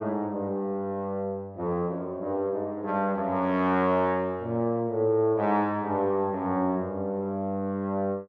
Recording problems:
none

